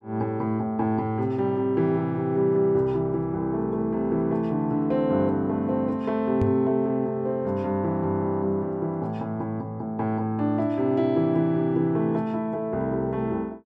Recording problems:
microphone thump; at 6.5 s; peak +3 dB vs average level

